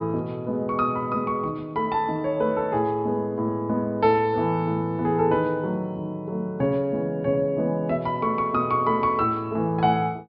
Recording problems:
treble cut off; nothing above 5.5 kHz

